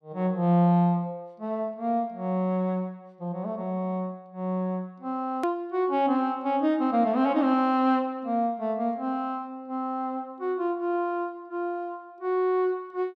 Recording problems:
edit click; at 5.5 s

